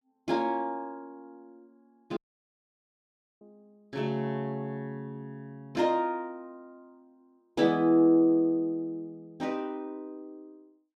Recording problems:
dropout; at 2 s for 1 s

